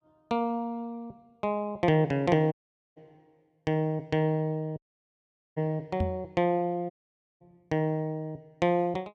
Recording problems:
dropout; at 2.5 s, at 5 s for 1 s and at 7 s for 0.5 s
knock on the microphone; at 6 s; peak +3 dB vs average level

